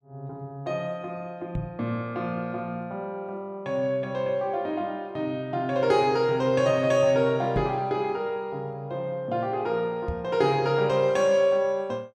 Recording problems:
microphone thump; at 1.5 s, at 7.5 s and at 10 s; peak -1 dB vs average level

